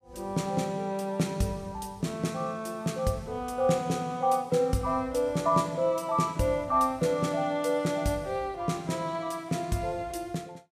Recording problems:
none

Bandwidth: 15 kHz